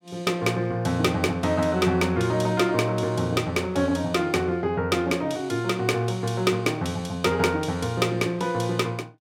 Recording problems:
none

